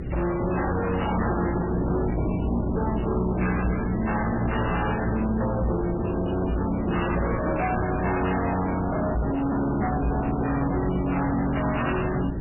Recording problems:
codec artefacts; MP3, log-spectral distance 9 dB, nothing above 2.8 kHz
distortion; hard clipping, uneven, signal-to-distortion ratio 6 dB
hum; 60 Hz, harmonics up to 420 Hz, SNR 7 dB
background hiss; SNR 26 dB
wind noise; below 330 Hz, SNR 9 dB

